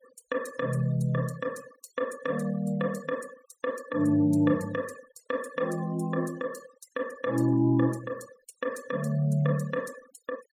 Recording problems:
denoising artefacts; signal-to-artefact ratio 21 dB

